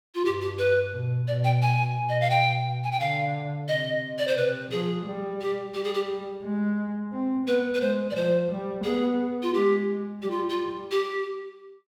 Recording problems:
none

